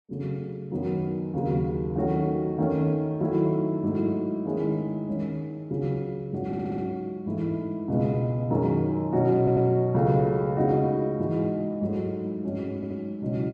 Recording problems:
stutter; at 6.5 s, at 9.5 s and at 13 s

